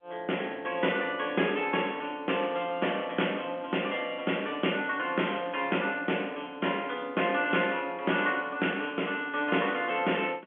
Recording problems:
telephone audio; 220 Hz to 3.4 kHz, G.711

